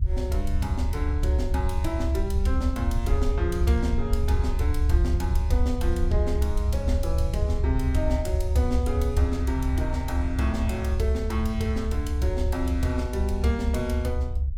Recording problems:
low-frequency rumble; below 72 Hz, SNR -2 dB

